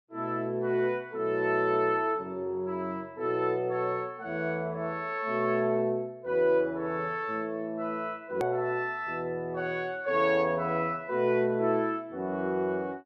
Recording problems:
edit click; at 8.5 s

